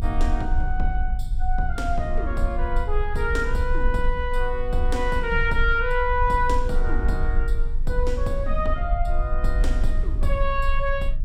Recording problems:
low-frequency rumble; below 46 Hz, strongest tone 22 Hz, SNR 1 dB

